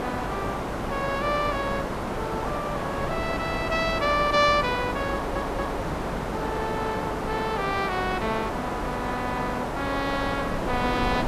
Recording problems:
hum; 50 Hz, harmonics up to 400 Hz, SNR 15 dB
hiss; SNR 2 dB
wind on the microphone; below 600 Hz, SNR 10 dB
stutter; at 5 s

